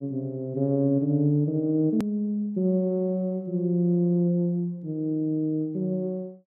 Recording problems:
click at an edit; at 2 s

